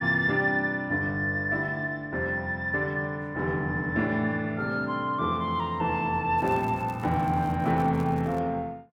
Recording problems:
crackling; from 6.5 to 8.5 s; loose cable, SNR 28 dB

